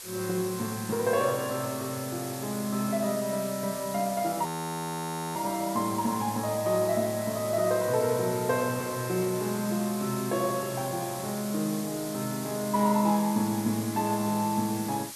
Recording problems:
hiss; slope +1 dB per octave, SNR 10 dB
audio freezing; at 4.5 s for 1 s

